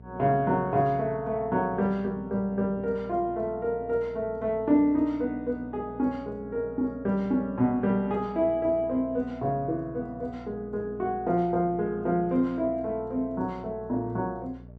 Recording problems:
electrical hum; 60 Hz, harmonics up to 720 Hz, SNR 20 dB

